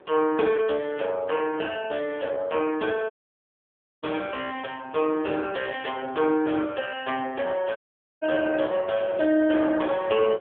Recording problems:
telephone audio; 340 Hz to 3.3 kHz, AMR-NB
wind noise; below 720 Hz, SNR 21 dB
lost packets; 1.7% of the sound replaced, filled with repeated pitch periods
audio cutting out; at 3 s for 1 s and at 8 s

